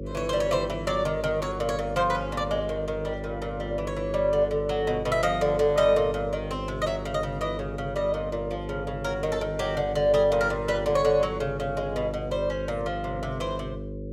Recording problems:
hum; 50 Hz, harmonics up to 550 Hz, SNR 9 dB

